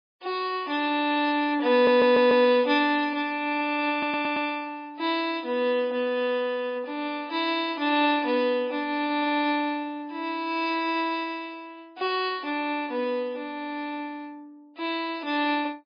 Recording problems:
codec artefacts; MP3, log-spectral distance 2 dB
stutter; at 1.5 s and at 4 s

